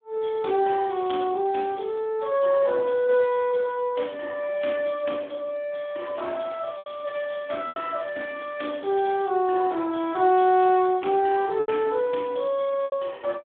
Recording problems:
telephone audio; 240 Hz to 3.6 kHz, Speex
packet loss; 2% of the sound replaced, filled with repeated pitch periods
crackle; at 0.5 s and from 6 to 9.5 s; loose cable, SNR 27 dB

